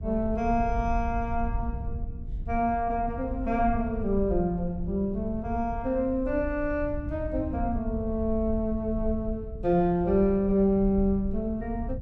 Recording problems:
rumble; below 78 Hz, SNR 9 dB

